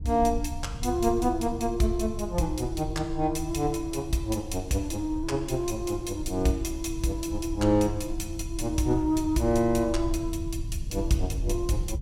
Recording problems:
rumble; below 82 Hz, SNR 9 dB

